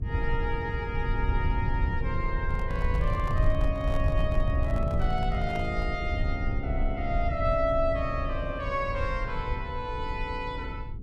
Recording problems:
electrical hum; 50 Hz, harmonics up to 450 Hz, SNR 15 dB
low-frequency rumble; below 86 Hz, SNR 0 dB
handling noise; from 2.5 to 6 s; peak -7 dB vs average level

